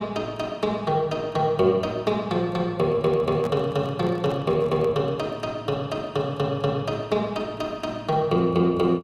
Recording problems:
microphone handling noise; from 3 to 5 s; peak -7 dB vs average level

